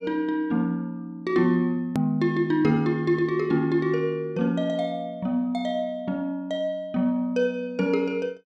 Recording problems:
hard cut with a click; at 2 s

